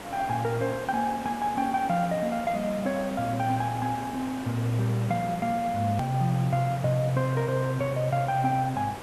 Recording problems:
background hiss; slope -6 dB per octave, SNR 12 dB
click at an edit; at 6 s

